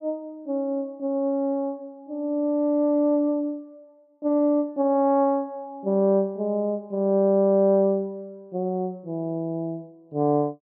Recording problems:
none

